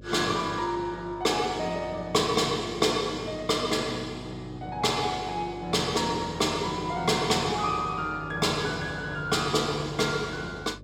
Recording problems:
hum; 50 Hz, harmonics up to 600 Hz, SNR 19 dB

